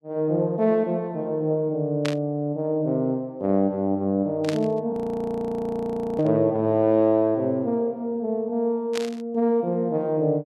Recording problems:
burst of static; 4 times, first at 2 s; peak -2 dB vs average level
frozen audio; at 5 s for 1.5 s

